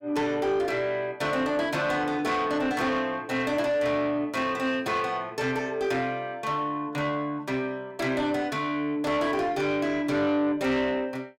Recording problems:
distortion; soft clipping, signal-to-distortion ratio 12 dB

